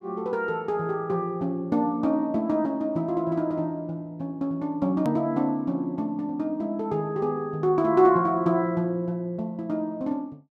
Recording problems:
click at an edit; at 5 s

